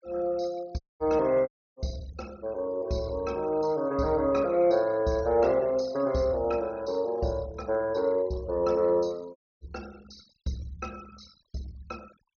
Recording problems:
treble missing; nothing above 6.8 kHz
noise reduction artefacts; signal-to-artefact ratio 24 dB
dropout; at 1 s, at 1.5 s and at 9.5 s

